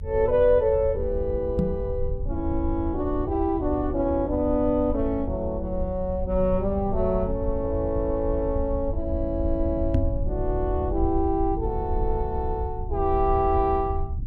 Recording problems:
rumble; below 78 Hz, SNR 6 dB
knock on the microphone; at 1.5 s and at 10 s; peak +6 dB vs average level

